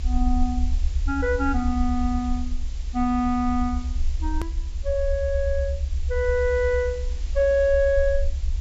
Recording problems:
treble cut off; nothing above 8 kHz
background hiss; SNR 22 dB
rumble; below 70 Hz, SNR 4 dB
click at an edit; at 4.5 s

